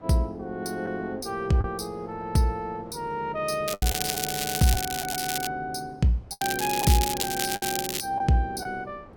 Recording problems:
wind on the microphone; below 680 Hz, SNR 22 dB
packet loss; 4% of the sound replaced, filled with the last packet
crackle; from 3.5 to 5.5 s and from 6.5 to 8 s; loose cable, SNR 2 dB

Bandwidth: 17.5 kHz